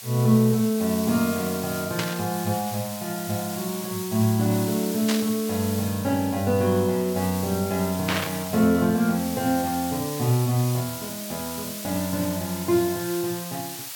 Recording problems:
hiss; slope +2 dB per octave, SNR 9 dB
static burst; at 2 s, at 5 s and at 8 s; peak +2 dB vs average level

